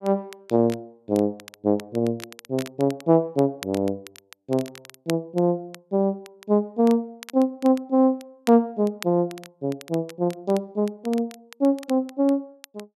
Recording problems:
crackle; vinyl, SNR 20 dB

